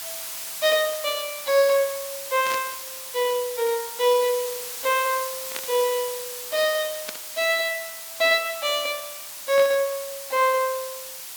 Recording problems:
hiss; slope +2 dB per octave, SNR 9 dB
static burst; 4 times, first at 2.5 s; peak -4 dB vs average level

